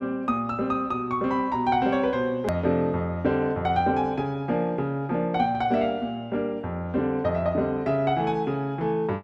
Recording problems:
hard cut with a click; at 2.5 s

